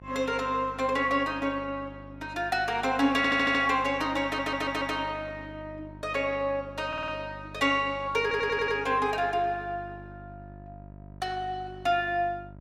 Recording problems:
hum; 50 Hz, harmonics up to 1 kHz, SNR 19 dB
stutter; 4 times, first at 3 s

